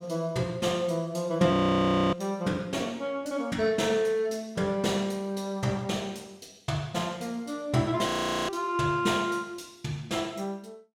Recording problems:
audio freezing; at 1.5 s for 0.5 s and at 8 s

